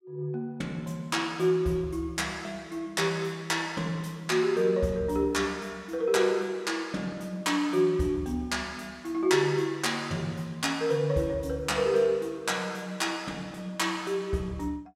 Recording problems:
none

